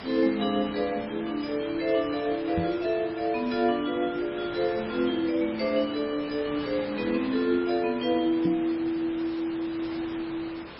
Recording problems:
codec artefacts; MP3, log-spectral distance 7 dB, nothing above 4.6 kHz
hiss; SNR 13 dB
microphone bump; at 2.5 s and at 8.5 s; peak +1 dB vs average level

